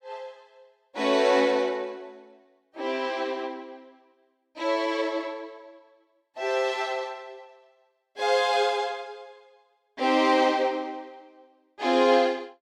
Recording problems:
none

